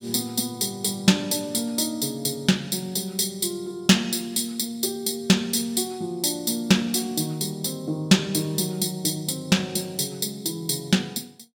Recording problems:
none

